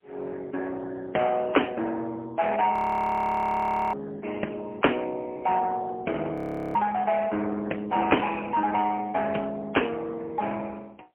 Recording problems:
phone line; 280 Hz to 3.1 kHz, AMR-NB, then MP3
audio freezing; at 2.5 s for 1 s and at 6.5 s

